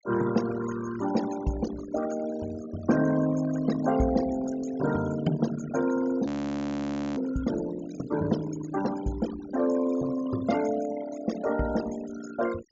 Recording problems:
treble missing; nothing above 7.3 kHz
noise reduction artefacts; signal-to-artefact ratio 12 dB
audio freezing; at 6.5 s for 1 s

